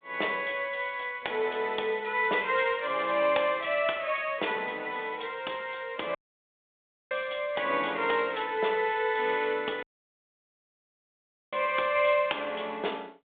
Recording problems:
phone line; 320 Hz to 3.6 kHz, G.726
audio cutting out; at 6 s for 1 s and at 10 s for 1.5 s

